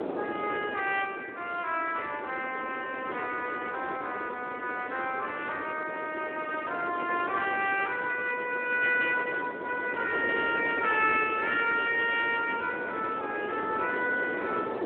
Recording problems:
phone line; 320 Hz to 3.4 kHz, Speex
wind noise; below 670 Hz, SNR 8 dB

